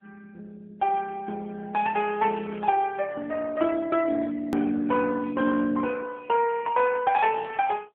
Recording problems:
telephone audio; 260 Hz to 3.4 kHz, AMR-NB
edit click; at 4.5 s

